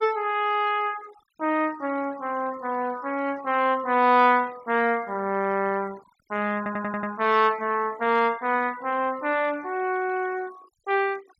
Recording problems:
noise reduction artefacts; signal-to-artefact ratio 23 dB
stutter; at 6.5 s

